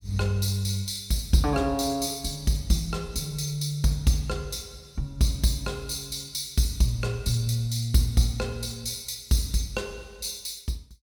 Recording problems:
none

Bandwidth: 17 kHz